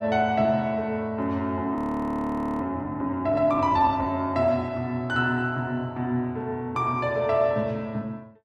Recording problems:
frozen audio; at 2 s for 1 s

